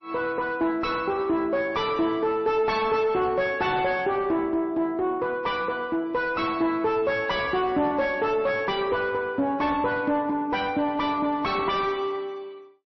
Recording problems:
codec artefacts; MP3, log-spectral distance 2 dB, nothing above 5.7 kHz
distorted audio; soft clipping, signal-to-distortion ratio 7 dB

